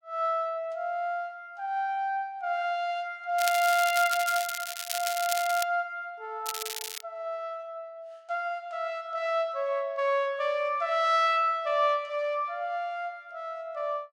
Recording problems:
crackling; from 3.5 to 5.5 s and at 6.5 s; loose cable, SNR 6 dB

